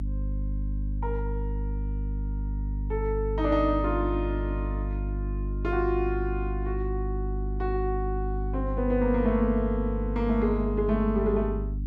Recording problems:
mains hum; 50 Hz, harmonics up to 300 Hz, SNR 3 dB

